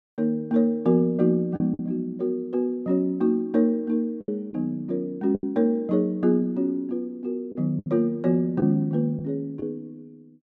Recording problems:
packet loss; 4% of the sound replaced, filled with the last packet

